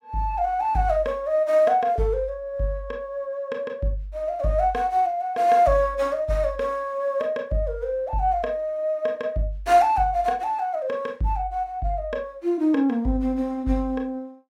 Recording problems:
none

